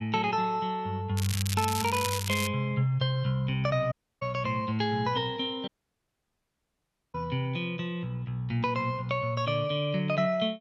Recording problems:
crackling; from 1 to 2.5 s; loose cable, SNR 6 dB
audio cutting out; at 4 s and at 5.5 s for 1.5 s

